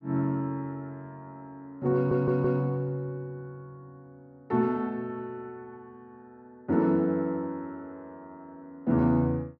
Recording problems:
stutter; at 2 s

